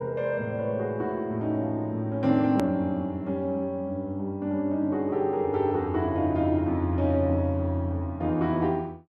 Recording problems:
click at an edit; at 2.5 s

